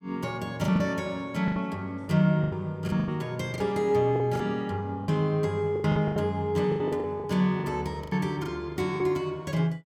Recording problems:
packet loss; 12% of the sound replaced, filled with the last packet

